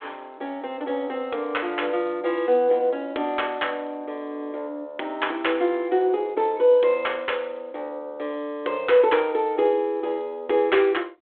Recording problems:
telephone audio; 280 Hz to 3.5 kHz, G.726

